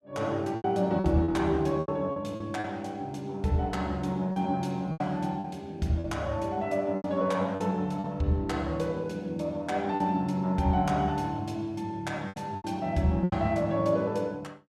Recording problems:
lost packets; 7% of the sound replaced, filled with repeated pitch periods

